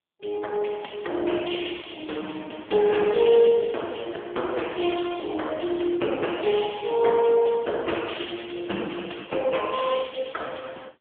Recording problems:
telephone audio; 280 Hz to 3.4 kHz, AMR-NB

